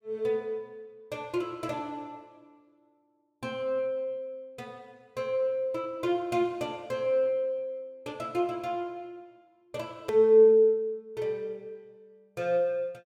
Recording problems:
click at an edit; at 10 s

